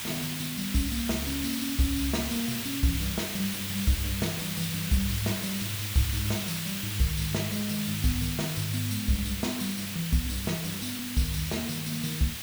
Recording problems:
electrical hum; 50 Hz, harmonics up to 500 Hz, SNR 20 dB
background hiss; SNR 3 dB

